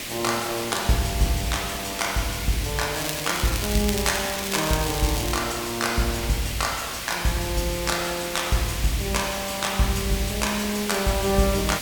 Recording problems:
background hiss; SNR 5 dB
crackling; from 3 to 5.5 s; loose cable, SNR 6 dB

